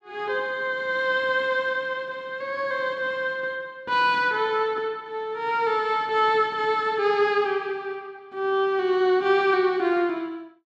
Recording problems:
none

